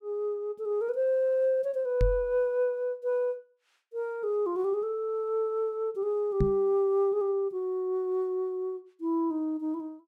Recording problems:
microphone bump; at 2 s and at 6.5 s; peak +5 dB vs average level

